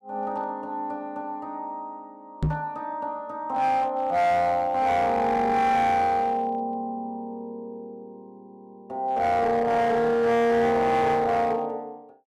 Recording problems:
distorted audio; hard clipping, uneven, signal-to-distortion ratio 10 dB
microphone thump; at 2.5 s; peak +3 dB vs average level

